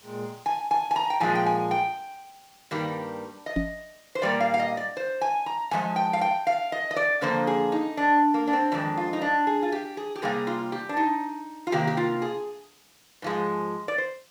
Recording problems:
hiss; slope 0 dB per octave, SNR 29 dB
microphone bump; at 3.5 s; peak +3 dB vs average level

